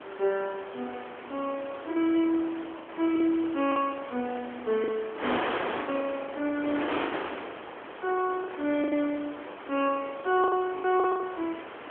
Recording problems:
phone line; 280 Hz to 3.3 kHz, AMR-NB
wind on the microphone; below 1.8 kHz, SNR 8 dB
packet loss; 9% of the sound replaced, filled with the last packet

